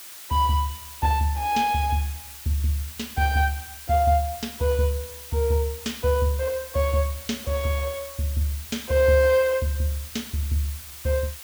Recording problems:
background hiss; slope +2 dB per octave, SNR 13 dB

